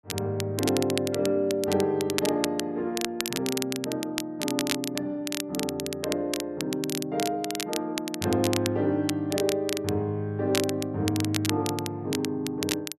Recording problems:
crackling; vinyl, SNR 6 dB

